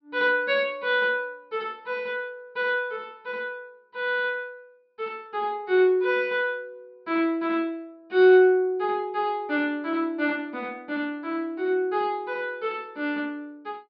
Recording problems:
treble cut off; nothing above 5.5 kHz

